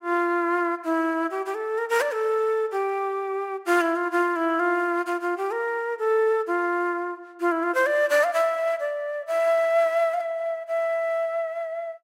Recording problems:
none

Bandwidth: 16 kHz